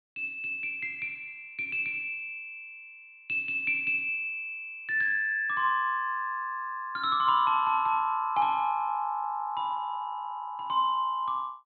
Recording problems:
low-pass filter; nothing above 4.4 kHz

